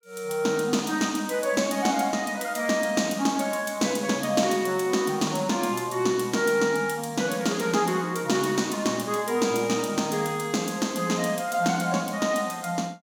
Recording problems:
none

